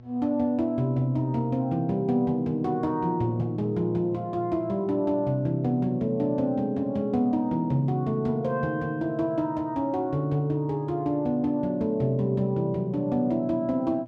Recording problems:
hum; 60 Hz, harmonics up to 840 Hz, SNR 22 dB

